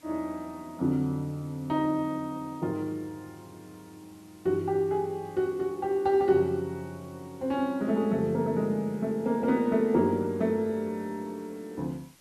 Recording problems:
hiss; slope -1 dB per octave, SNR 28 dB

